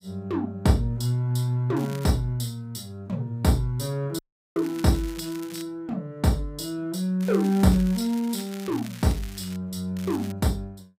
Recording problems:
crackle; 4 times, first at 2 s; loose cable, SNR 18 dB
dropout; at 4 s

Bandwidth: 15.5 kHz